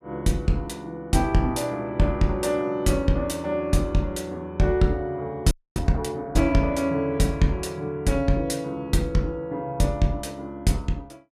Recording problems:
audio freezing; at 5.5 s

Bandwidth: 14.5 kHz